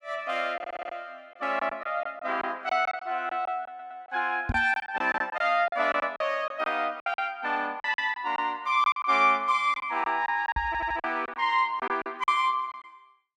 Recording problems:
lost packets; 11% of the sound replaced, filled with silence
audio stuttering; at 0.5 s, at 3.5 s and at 11 s
microphone thump; at 4.5 s and at 11 s; peak +1 dB vs average level

